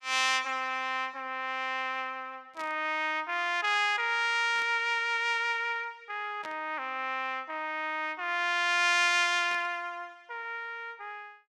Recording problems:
burst of static; 4 times, first at 2.5 s; peak -11 dB vs average level

